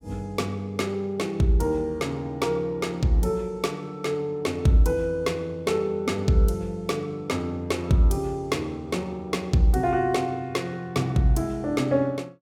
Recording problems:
none

